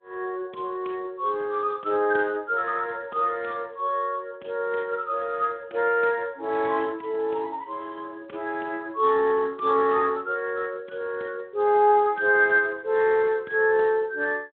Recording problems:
phone line; 220 Hz to 3.5 kHz, Speex

